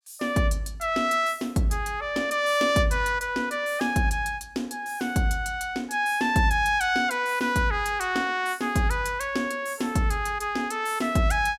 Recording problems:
none

